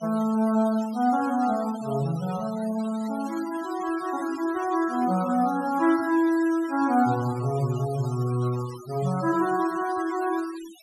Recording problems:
denoising artefacts; signal-to-artefact ratio 19 dB

